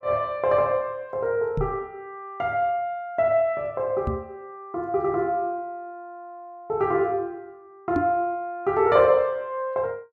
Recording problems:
microphone thump; at 1.5 s, at 4 s and at 8 s; peak +2 dB vs average level

